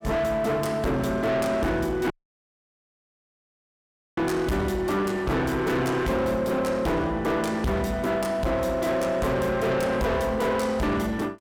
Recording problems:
distorted audio; soft clipping, signal-to-distortion ratio 6 dB
dropout; at 2 s for 2 s

